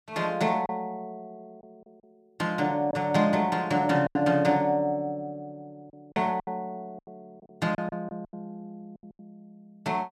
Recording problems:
packet loss; 8% of the sound replaced, filled with silence

